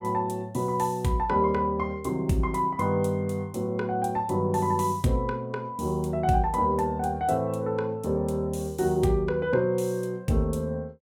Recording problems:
none

